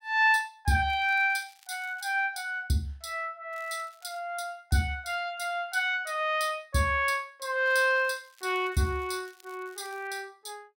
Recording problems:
crackle; from 1 to 2 s, at 3.5 s and from 7.5 to 10 s; loose cable, SNR 29 dB

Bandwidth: 16.5 kHz